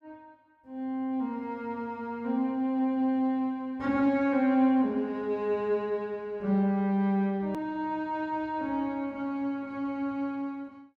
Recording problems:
hard cut with a click; at 7.5 s

